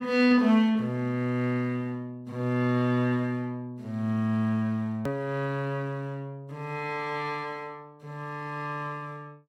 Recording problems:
hard cut with a click; at 5 s

